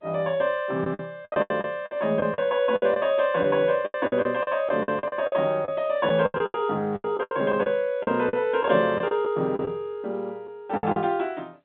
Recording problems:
telephone audio; 130 Hz to 3.8 kHz, G.711
lost packets; 14% of the sound replaced, filled with the last packet

